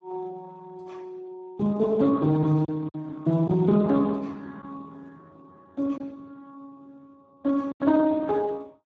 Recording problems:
lossy codec; Speex, log-spectral distance 2 dB
lost packets; 3% of the sound replaced, filled with silence

